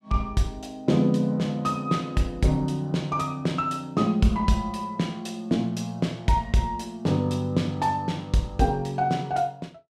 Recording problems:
none

